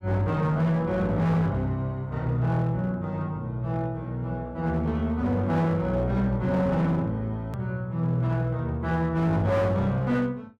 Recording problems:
distorted audio; hard clipping, uneven, signal-to-distortion ratio 10 dB
hard cut with a click; at 7.5 s

